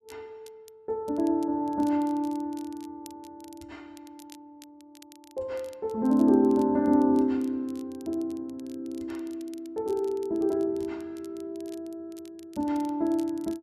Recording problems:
crackling; vinyl, SNR 27 dB

